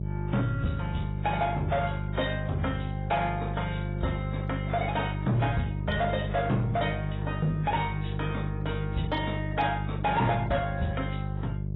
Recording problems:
lossy codec; AAC, then AAC, log-spectral distance 3 dB, nothing above 3.7 kHz
distortion; soft clipping, signal-to-distortion ratio 11 dB
hum; 50 Hz, harmonics up to 700 Hz, SNR 2 dB

